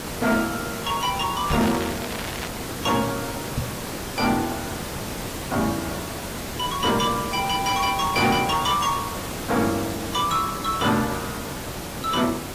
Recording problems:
lossy compression; AAC, log-spectral distance 8 dB, nothing above 15.5 kHz
distorted audio; soft clipping, signal-to-distortion ratio 10 dB
background hiss; slope -4 dB per octave, SNR 6 dB
crackling; from 1.5 to 2.5 s; loose cable, SNR 11 dB
microphone thump; at 1.5 s and at 3.5 s; peak +1 dB vs average level

